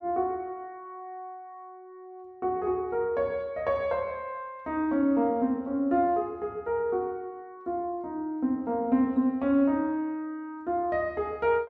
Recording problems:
none

